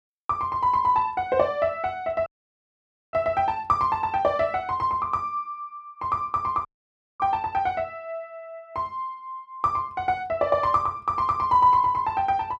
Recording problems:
dropout; at 2.5 s for 1 s and at 6.5 s for 0.5 s

